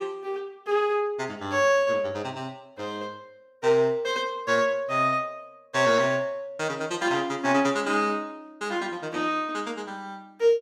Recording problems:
none

